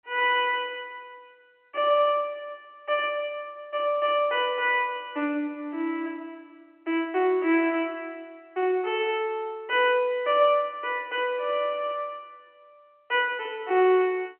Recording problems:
phone line; 240 Hz to 3.1 kHz, G.711

